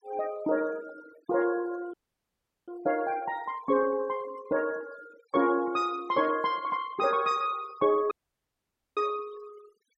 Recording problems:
noise reduction artefacts; signal-to-artefact ratio 21 dB
audio cutting out; at 2 s for 0.5 s and at 8 s for 1 s

